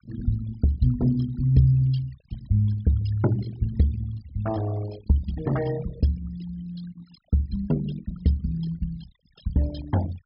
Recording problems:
treble missing; nothing above 5.5 kHz
noise reduction artefacts; signal-to-artefact ratio 19 dB

